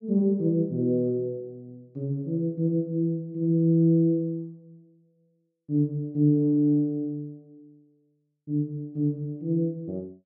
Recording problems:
none

